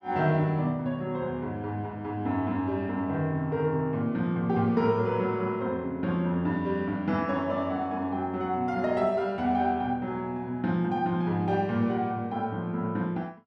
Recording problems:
none

